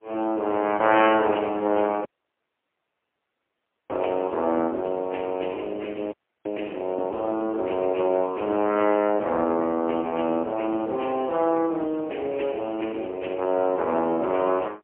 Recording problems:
telephone audio; 240 Hz to 3.1 kHz, AMR-NB, then MP3
audio cutting out; at 2 s for 2 s and at 6 s

